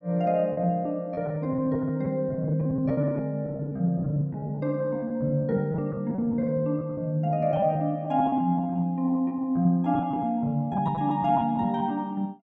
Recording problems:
lost packets; 14% of the sound replaced, filled with repeated pitch periods

